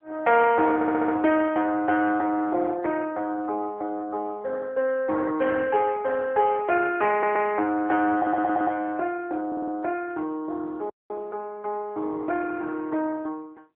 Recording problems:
telephone audio; 260 Hz to 3.3 kHz, AMR-NB
stutter; 4 times, first at 1 s
audio cutting out; at 11 s

